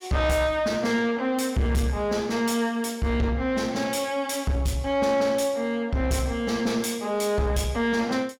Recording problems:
distorted audio; soft clipping, signal-to-distortion ratio 11 dB

